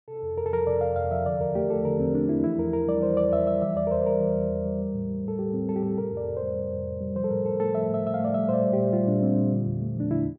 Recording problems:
treble missing; nothing above 7.4 kHz

